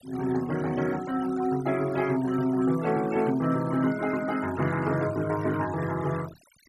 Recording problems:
denoising artefacts; signal-to-artefact ratio 18 dB

